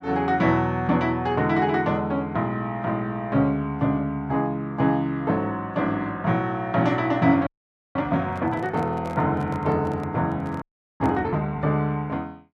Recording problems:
audio freezing; at 7.5 s and at 11 s
handling noise; from 8.5 to 11 s; peak -9 dB vs average level

